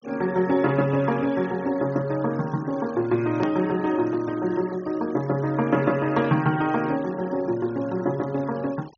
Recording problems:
treble missing; nothing above 6.6 kHz
denoising artefacts; signal-to-artefact ratio 23 dB
edit click; at 3.5 s

